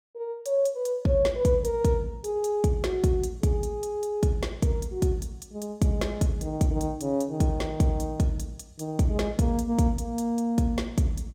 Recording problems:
none

